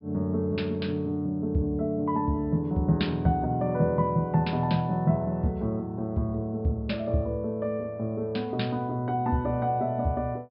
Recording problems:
treble missing; nothing above 5.3 kHz

